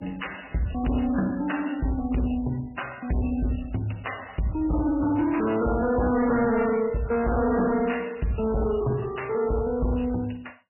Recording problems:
codec artefacts; MP3, log-spectral distance 6 dB, nothing above 2.9 kHz
distorted audio; hard clipping, uneven, signal-to-distortion ratio 7 dB

